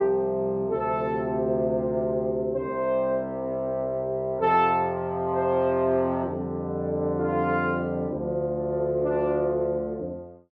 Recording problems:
none

